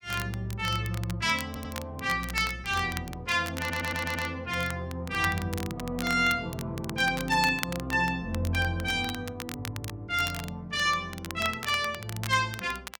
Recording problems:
crackle; vinyl, SNR 12 dB
audio stuttering; at 1.5 s and at 3.5 s

